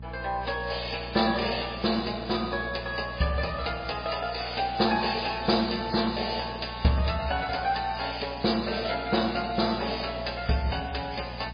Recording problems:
lossy codec; MP3, log-spectral distance 12 dB
mains hum; 60 Hz, harmonics up to 420 Hz, SNR 15 dB

